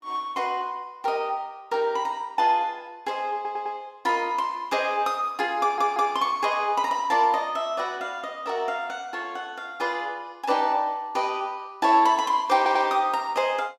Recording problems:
stutter; at 3.5 s, at 5.5 s and at 13 s

